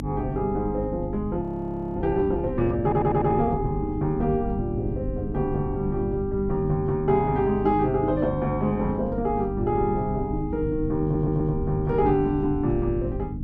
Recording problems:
mains hum; 50 Hz, harmonics up to 300 Hz, SNR 8 dB
rumble; below 120 Hz, SNR 12 dB
frozen audio; at 1.5 s for 0.5 s
audio stuttering; at 3 s and at 11 s

